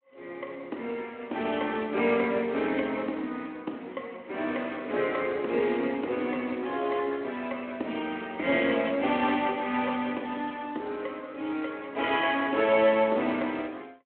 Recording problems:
phone line; 220 Hz to 3.3 kHz, Speex

